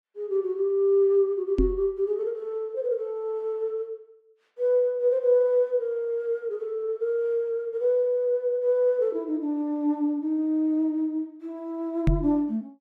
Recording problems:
microphone bump; at 1.5 s and at 12 s; peak +6 dB vs average level

